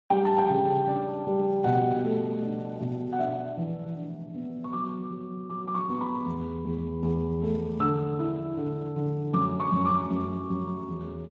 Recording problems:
codec artefacts; Speex, log-spectral distance 2 dB

